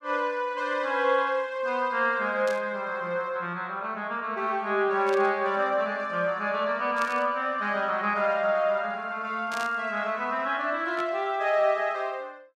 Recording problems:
burst of static; 5 times, first at 2.5 s; peak -8 dB vs average level

